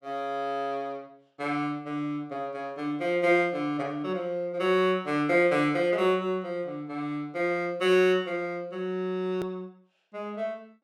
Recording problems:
click at an edit; at 9.5 s

